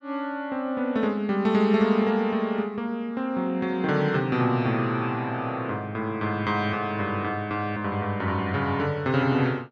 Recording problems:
none

